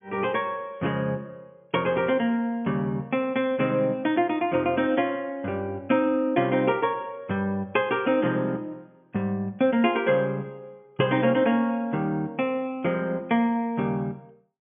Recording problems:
treble missing; nothing above 3.5 kHz

